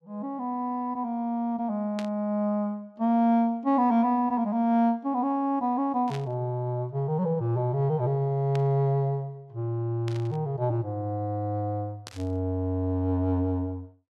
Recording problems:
static burst; 5 times, first at 2 s; peak -8 dB vs average level

